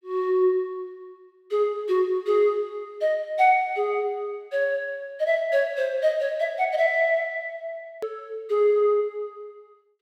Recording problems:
click at an edit; at 8 s

